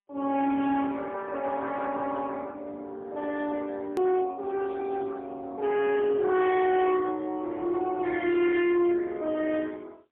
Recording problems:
telephone audio; 240 Hz to 3.5 kHz, AMR-NB, then MP3
distortion; hard clipping, uneven, signal-to-distortion ratio 11 dB
hard cut with a click; at 4 s

